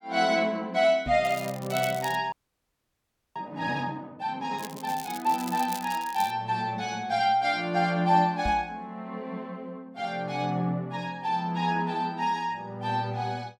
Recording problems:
microphone bump; at 1 s and at 8.5 s; peak -2 dB vs average level
crackle; at 1 s and from 4.5 to 6.5 s; loose cable, SNR 14 dB
audio freezing; at 2.5 s for 1 s

